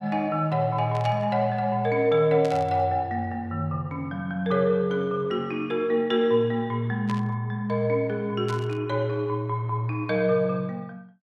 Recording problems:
static burst; 4 times, first at 1 s; peak -9 dB vs average level

